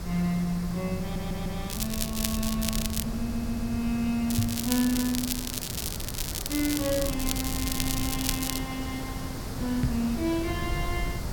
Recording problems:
hiss; SNR 9 dB
rumble; below 120 Hz, SNR 7 dB
stutter; at 1 s and at 3 s
crackle; from 1.5 to 3 s and from 4.5 to 8.5 s; loose cable, SNR 1 dB
knock on the microphone; at 4.5 s and at 10 s; peak +8 dB vs average level

